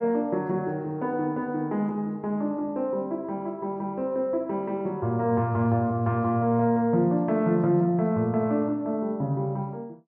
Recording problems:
none

